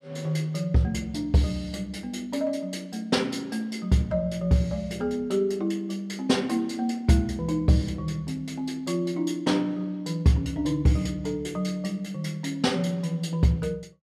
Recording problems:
none

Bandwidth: 14.5 kHz